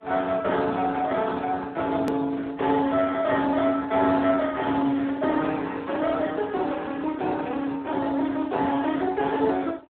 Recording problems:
telephone audio; 190 Hz to 2.4 kHz, Speex
click at an edit; at 2 s

